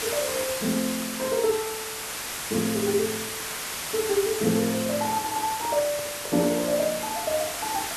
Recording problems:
hiss; slope 0 dB per octave, SNR 4 dB
microphone handling noise; from 4.5 to 7 s; peak -8 dB vs average level

